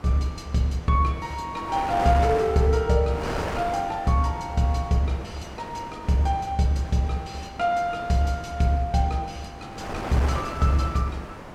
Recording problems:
hum; 50 Hz, harmonics up to 1.1 kHz, SNR 24 dB
wind noise; below 1.3 kHz, SNR 11 dB

